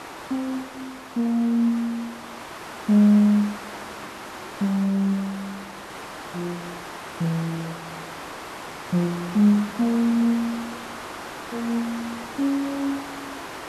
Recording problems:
hiss; SNR 12 dB

